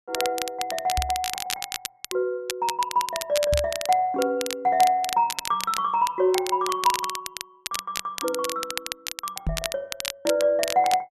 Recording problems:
crackling; vinyl, SNR 7 dB
microphone bump; at 1 s, at 3.5 s and at 9.5 s; peak +1 dB vs average level

